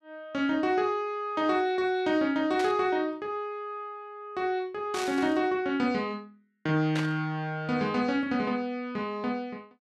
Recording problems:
static burst; at 2.5 s, at 5 s and at 7 s; peak -3 dB vs average level

